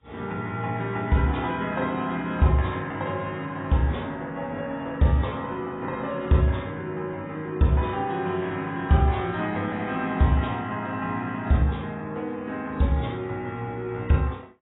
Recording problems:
lossy compression; AAC, log-spectral distance 2 dB, nothing above 3.8 kHz

